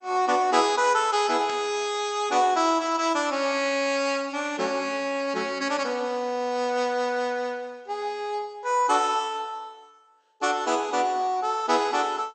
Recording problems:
codec artefacts; MP2, log-spectral distance 3 dB, nothing above 8.2 kHz
burst of static; at 1.5 s; peak -9 dB vs average level

